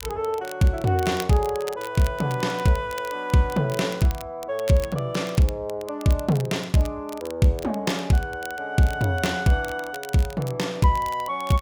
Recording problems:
crackling; vinyl, SNR 19 dB

